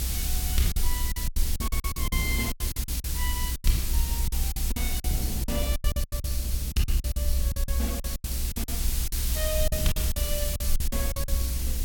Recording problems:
electrical hum; 50 Hz, harmonics up to 500 Hz, SNR 17 dB
hiss; slope +3 dB per octave, SNR -3 dB
rumble; below 64 Hz, SNR -5 dB
wind on the microphone; below 200 Hz, SNR 3 dB
packet loss; 16% of the sound replaced, filled with silence

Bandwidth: 17 kHz